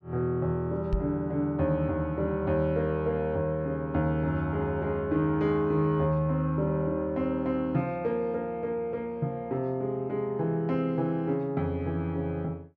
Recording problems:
microphone thump; at 1 s; peak +3 dB vs average level

